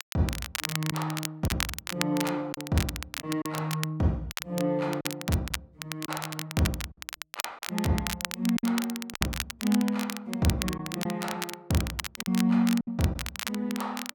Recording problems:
crackling; vinyl, SNR 5 dB
lost packets; 5% of the sound replaced, filled with silence

